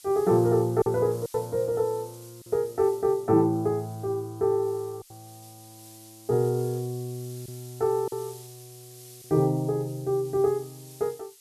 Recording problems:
hiss; SNR 21 dB
packet loss; 3% of the sound replaced, filled with silence

